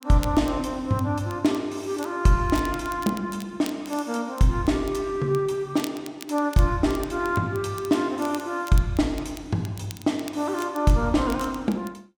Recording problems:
crackle; vinyl, SNR 19 dB

